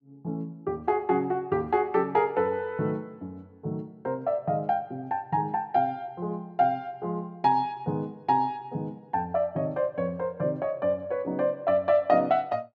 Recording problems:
none

